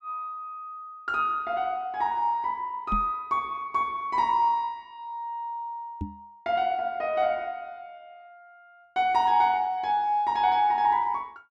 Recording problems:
knock on the microphone; at 3 s and at 6 s; peak -2 dB vs average level

